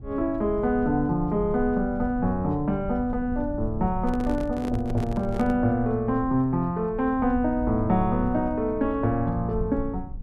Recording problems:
low-frequency rumble; below 96 Hz, SNR 11 dB
microphone handling noise; from 4 to 5.5 s; peak -6 dB vs average level

